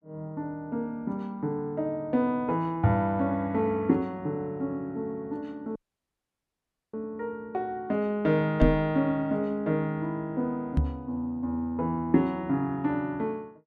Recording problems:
dropout; at 6 s for 1 s
microphone thump; at 8.5 s and at 11 s; peak +9 dB vs average level

